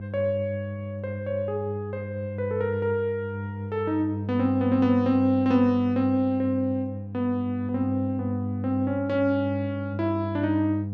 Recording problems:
electrical hum; 50 Hz, harmonics up to 500 Hz, SNR 7 dB

